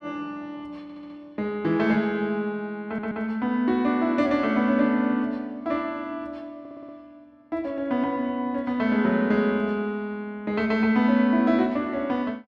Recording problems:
stutter; at 1 s, at 3 s and at 6.5 s

